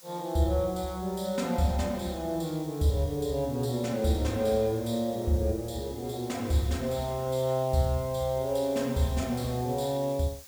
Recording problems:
hiss; slope +1 dB per octave, SNR 19 dB

